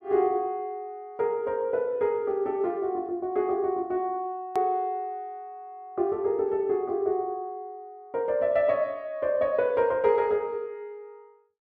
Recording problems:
click at an edit; at 4.5 s

